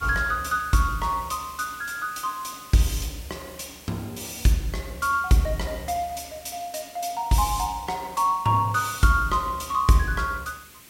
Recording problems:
background hiss; SNR 20 dB

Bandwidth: 16 kHz